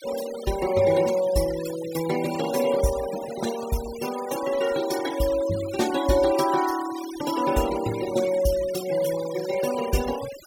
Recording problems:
noise reduction artefacts; signal-to-artefact ratio 13 dB

